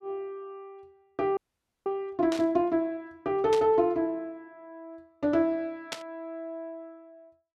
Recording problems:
audio freezing; at 1.5 s
burst of static; at 2.5 s, at 3.5 s and at 6 s; peak -1 dB vs average level

